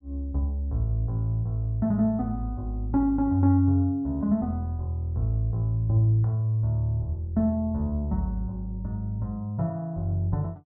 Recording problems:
none

